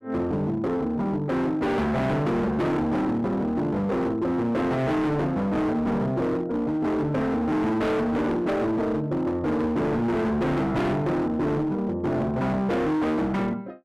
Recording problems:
distorted audio; hard clipping, signal-to-distortion ratio 7 dB

